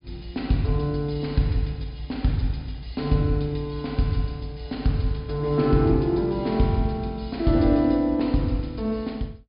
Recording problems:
low-pass filter; nothing above 5.1 kHz

